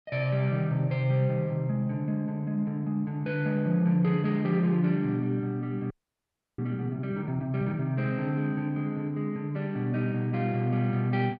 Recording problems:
frozen audio; at 6 s for 0.5 s

